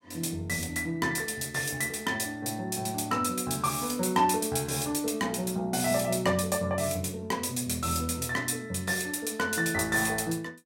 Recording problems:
none

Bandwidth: 16.5 kHz